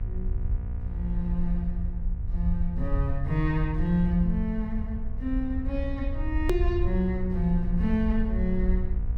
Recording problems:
hum; 60 Hz, harmonics up to 1.2 kHz, SNR 13 dB
low-frequency rumble; below 68 Hz, SNR 2 dB
edit click; at 6.5 s

